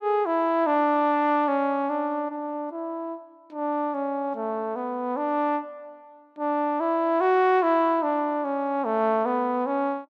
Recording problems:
none

